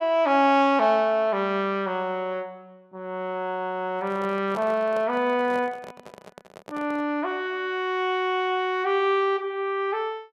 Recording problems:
handling noise; from 4 to 7 s; peak -9 dB vs average level

